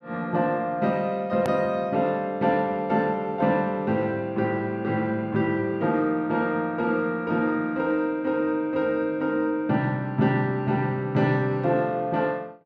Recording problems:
edit click; at 1.5 s

